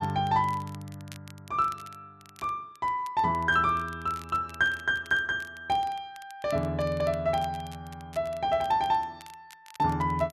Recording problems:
crackling; vinyl, SNR 24 dB

